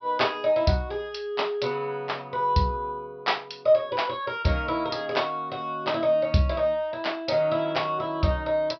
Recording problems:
low-pass filter; nothing above 5.5 kHz

